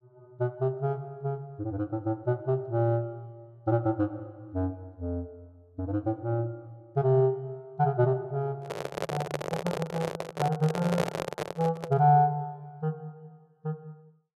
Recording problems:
handling noise; from 8.5 to 12 s; peak +5 dB vs average level

